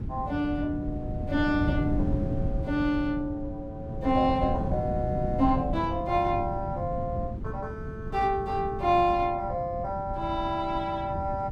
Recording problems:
wind on the microphone; below 190 Hz, SNR 5 dB

